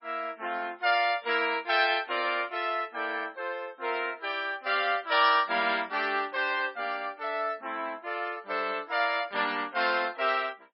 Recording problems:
codec artefacts; MP3, log-spectral distance 3 dB, nothing above 4.9 kHz

